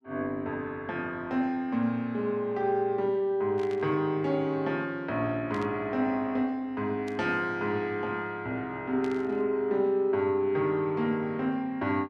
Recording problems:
burst of static; 4 times, first at 3.5 s; peak -12 dB vs average level

